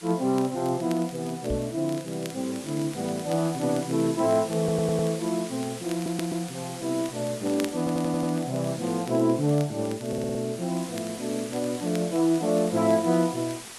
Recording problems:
lossy compression; AAC, log-spectral distance 9 dB
background hiss; slope 0 dB per octave, SNR 14 dB
crackle; vinyl, SNR 21 dB
microphone bump; at 1.5 s; peak -3 dB vs average level
stutter; 4 times, first at 4.5 s

